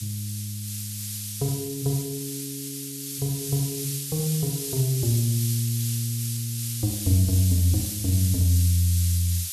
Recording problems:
background hiss; SNR 5 dB

